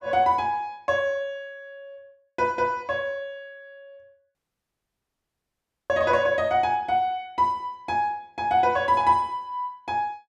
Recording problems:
audio cutting out; at 4.5 s for 1.5 s

